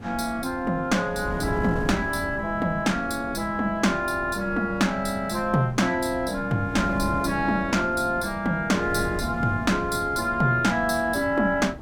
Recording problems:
wind noise; below 280 Hz, SNR 11 dB

